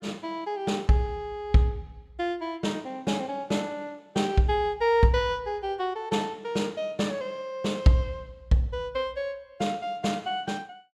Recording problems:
none

